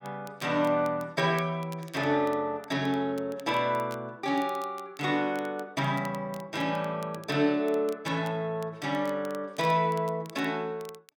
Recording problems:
crackling; vinyl, SNR 24 dB

